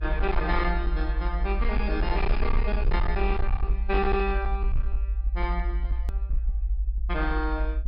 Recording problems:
low-pass filter; nothing above 5.5 kHz
distortion; hard clipping, signal-to-distortion ratio 11 dB
rumble; below 54 Hz, SNR -1 dB
hard cut with a click; at 6 s

